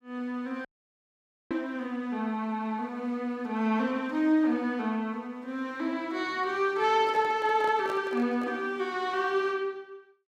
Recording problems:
dropout; at 0.5 s for 1 s
handling noise; from 7 to 8.5 s; peak -5 dB vs average level

